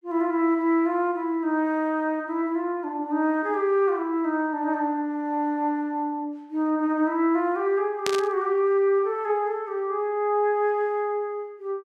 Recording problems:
burst of static; at 8 s; peak +1 dB vs average level

